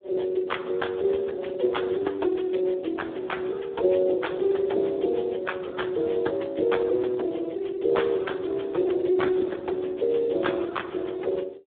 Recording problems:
telephone audio; 300 Hz to 3.6 kHz, Speex

